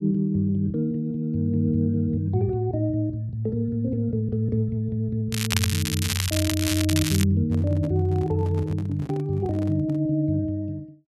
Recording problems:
crackle; from 5.5 to 7 s; loose cable, SNR 3 dB
handling noise; from 7.5 to 10 s; peak -9 dB vs average level

